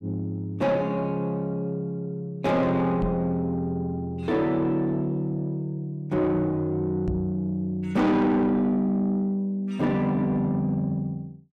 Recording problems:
distorted audio; soft clipping, signal-to-distortion ratio 10 dB
knock on the microphone; at 3 s and at 7 s; peak +1 dB vs average level

